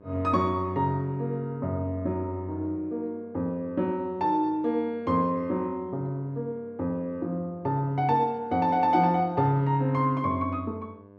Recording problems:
mains hum; 50 Hz, harmonics up to 1.6 kHz, SNR 24 dB

